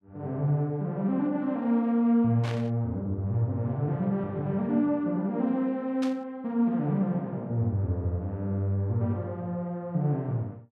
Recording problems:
static burst; at 2.5 s and at 6 s; peak -7 dB vs average level

